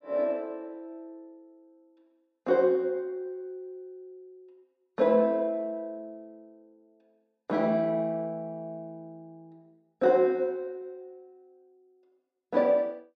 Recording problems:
none

